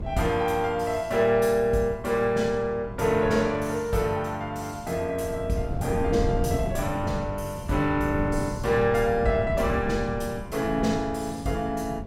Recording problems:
wind on the microphone; below 200 Hz, SNR 9 dB

